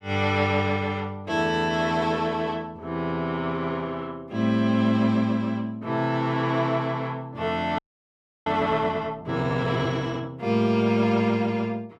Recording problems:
frozen audio; at 8 s for 0.5 s

